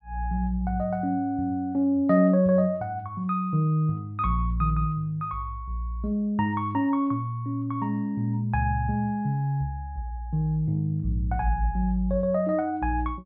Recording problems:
none

